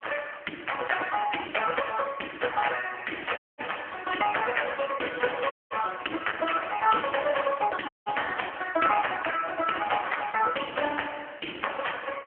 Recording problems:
phone line; 240 Hz to 3.1 kHz, AMR-NB
audio cutting out; at 3.5 s, at 5.5 s and at 8 s

